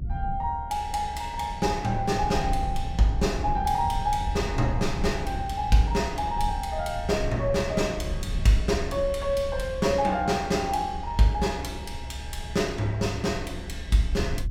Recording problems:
low-frequency rumble; below 84 Hz, SNR 8 dB

